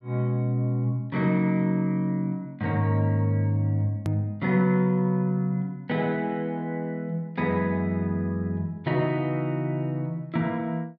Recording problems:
hard cut with a click; at 4 s

